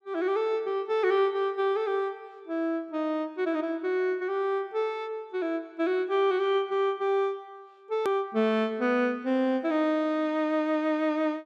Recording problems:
hard cut with a click; at 8 s

